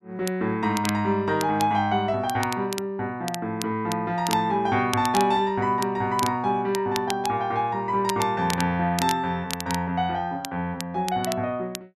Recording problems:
crackling; vinyl, SNR 11 dB

